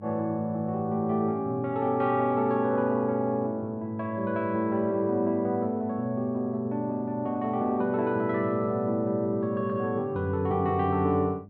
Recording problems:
hum; 50 Hz, harmonics up to 600 Hz, SNR 21 dB

